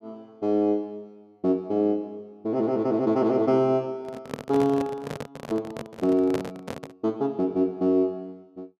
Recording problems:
microphone handling noise; from 4 to 7 s; peak -2 dB vs average level

